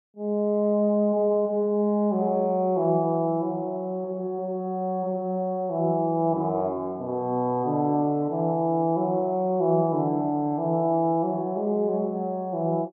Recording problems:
none

